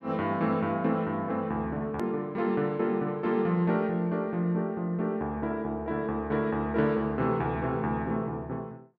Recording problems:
hard cut with a click; at 2 s

